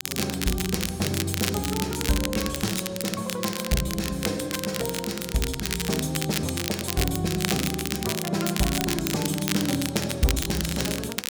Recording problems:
crackle; vinyl, SNR 3 dB

